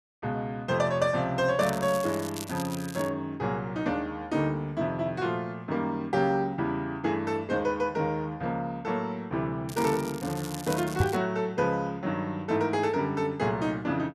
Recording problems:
crackling; from 1.5 to 3 s and from 9.5 to 11 s; loose cable, SNR 13 dB
knock on the microphone; at 11 s; peak +6 dB vs average level

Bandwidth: 13 kHz